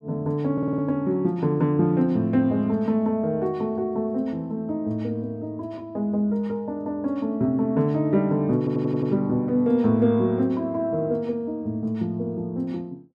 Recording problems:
stutter; at 0.5 s and at 8.5 s

